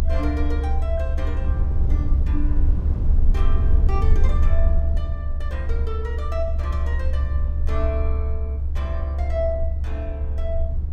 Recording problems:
low-frequency rumble; below 70 Hz, strongest tone 20 Hz, SNR -9 dB

